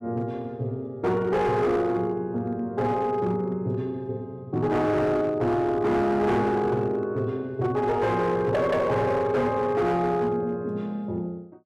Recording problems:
distortion; hard clipping, signal-to-distortion ratio 10 dB

